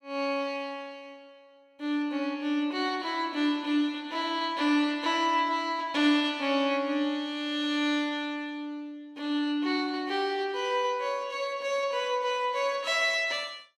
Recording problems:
none

